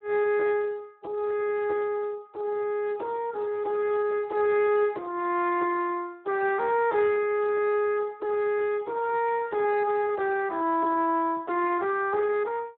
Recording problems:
telephone audio; 280 Hz to 3.1 kHz, Speex

